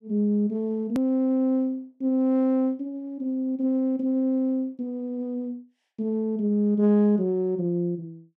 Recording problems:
click at an edit; at 1 s

